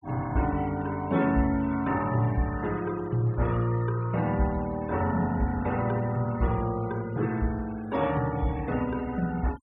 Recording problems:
noise reduction artefacts; signal-to-artefact ratio 20 dB

